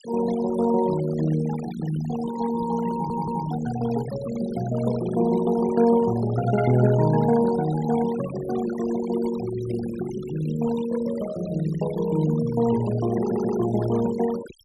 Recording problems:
noise reduction artefacts; signal-to-artefact ratio 14 dB
stutter; at 3 s and at 13 s

